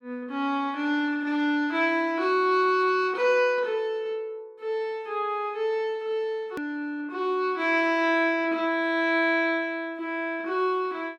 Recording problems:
click at an edit; at 6.5 s

